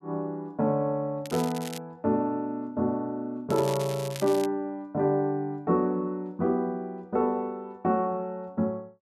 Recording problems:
crackle; at 1.5 s and at 3.5 s; loose cable, SNR 13 dB

